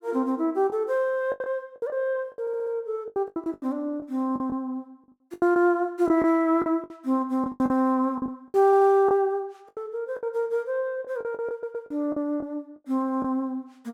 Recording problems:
lost packets; 12% of the sound replaced, filled with the last packet
stutter; at 2.5 s, at 8.5 s and at 12 s

